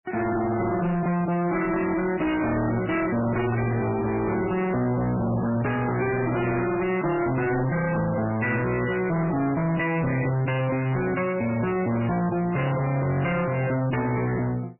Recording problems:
lossy codec; MP3, log-spectral distance 4 dB, nothing above 2.8 kHz
distortion; hard clipping, signal-to-distortion ratio 7 dB
burst of static; at 12 s; peak -11 dB vs average level

